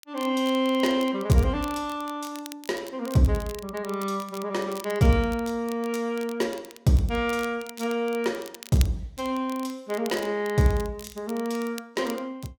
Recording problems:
crackle; vinyl, SNR 18 dB

